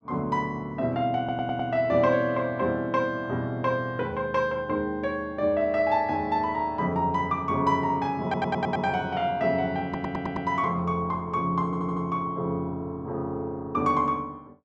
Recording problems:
audio stuttering; 4 times, first at 1 s

